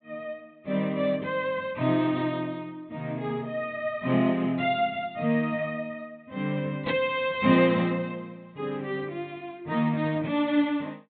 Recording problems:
low-pass filter; nothing above 4 kHz

